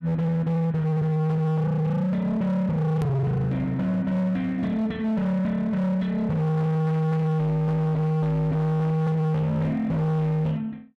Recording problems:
distortion; hard clipping, signal-to-distortion ratio 7 dB
click at an edit; at 3 s

